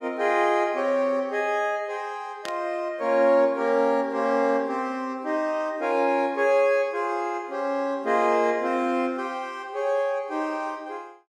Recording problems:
burst of static; at 2.5 s; peak -7 dB vs average level

